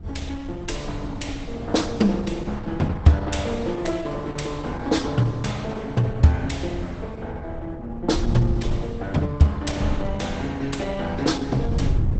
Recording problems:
codec artefacts; Opus, log-spectral distance 3 dB, nothing above 8 kHz
wind on the microphone; below 120 Hz, SNR 9 dB

